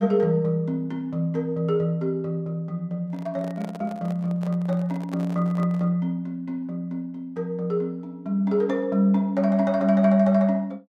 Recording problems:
handling noise; from 3 to 6 s; peak -9 dB vs average level

